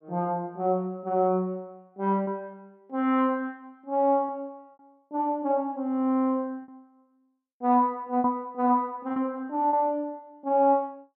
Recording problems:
lost packets; 3% of the sound replaced, filled with repeated pitch periods

